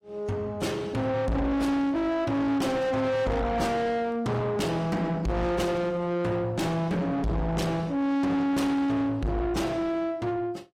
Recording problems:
lossy compression; AAC, log-spectral distance 2 dB, nothing above 16 kHz
distorted audio; soft clipping, signal-to-distortion ratio 7 dB

